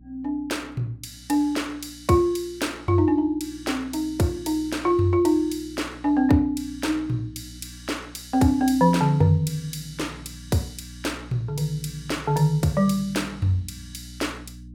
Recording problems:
electrical hum; 60 Hz, harmonics up to 300 Hz, SNR 21 dB

